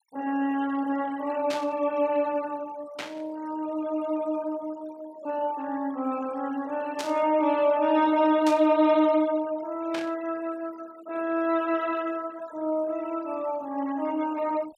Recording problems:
denoising artefacts; signal-to-artefact ratio 21 dB
static burst; 5 times, first at 1.5 s; peak -4 dB vs average level

